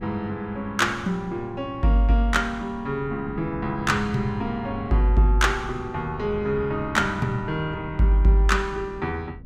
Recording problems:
wind noise; below 180 Hz, SNR 16 dB

